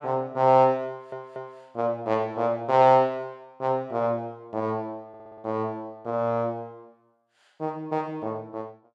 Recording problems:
audio stuttering; at 1 s and at 5 s

